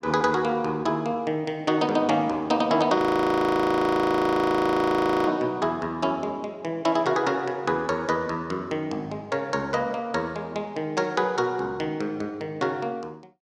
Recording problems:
frozen audio; at 3 s for 2.5 s

